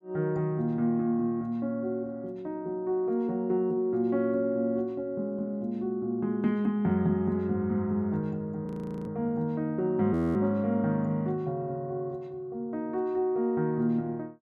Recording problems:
frozen audio; at 8.5 s and at 10 s

